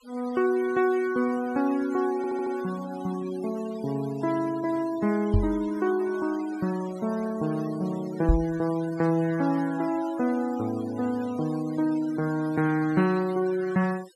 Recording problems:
denoising artefacts; signal-to-artefact ratio 18 dB
stutter; at 2 s
microphone thump; at 5.5 s and at 8.5 s; peak +8 dB vs average level

